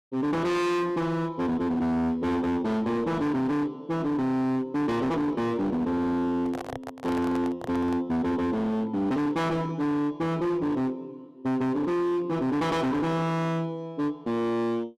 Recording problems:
distorted audio; hard clipping, signal-to-distortion ratio 6 dB
handling noise; from 6.5 to 8 s; peak -4 dB vs average level

